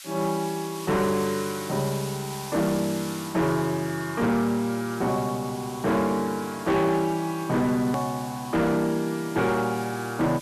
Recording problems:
distortion; hard clipping, signal-to-distortion ratio 11 dB
background hiss; SNR 14 dB
edit click; at 8 s

